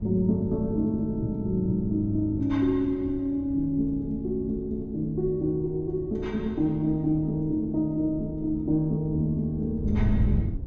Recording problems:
treble missing; nothing above 7.8 kHz
wind on the microphone; below 110 Hz, SNR 10 dB

